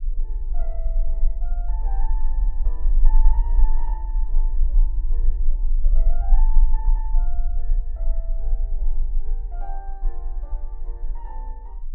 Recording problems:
low-frequency rumble; below 32 Hz, strongest tone 22 Hz, SNR -19 dB

